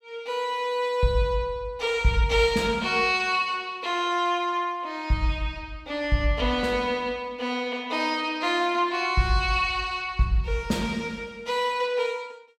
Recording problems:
none

